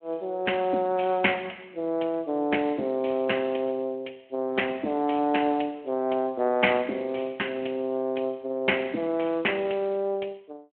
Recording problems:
telephone audio; 240 Hz to 3.2 kHz, Speex

